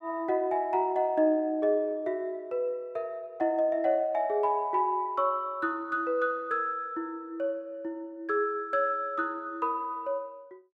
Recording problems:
none

